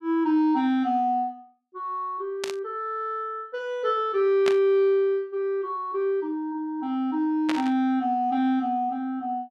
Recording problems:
static burst; at 2.5 s, at 4.5 s and at 7.5 s; peak 0 dB vs average level

